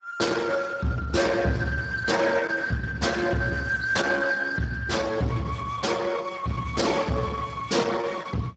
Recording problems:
lossy compression; Opus, then Speex, log-spectral distance 4 dB, nothing above 7.3 kHz
distorted audio; soft clipping, signal-to-distortion ratio 12 dB

